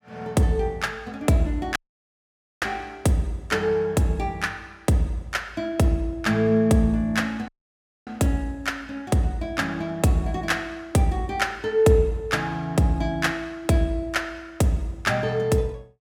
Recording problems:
audio cutting out; at 2 s for 1 s and at 7.5 s for 0.5 s

